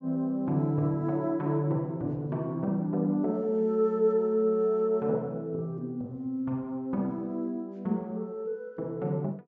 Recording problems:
low-pass filter; nothing above 8 kHz

